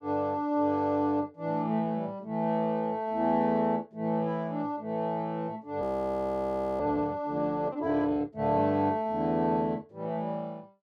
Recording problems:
audio freezing; at 6 s for 1 s

